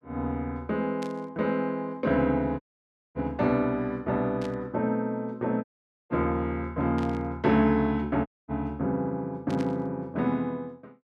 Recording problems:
burst of static; 4 times, first at 1 s; peak -10 dB vs average level
audio cutting out; at 2.5 s for 0.5 s, at 5.5 s and at 8.5 s

